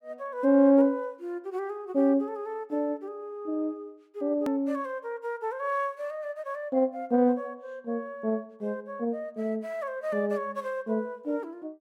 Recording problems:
hard cut with a click; at 4.5 s

